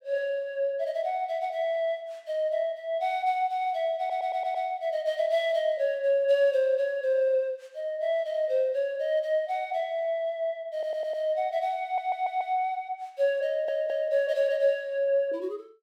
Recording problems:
audio stuttering; 4 times, first at 4 s

